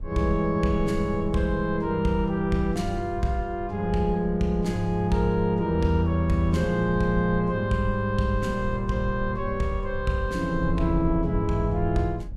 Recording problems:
rumble; below 84 Hz, SNR 11 dB

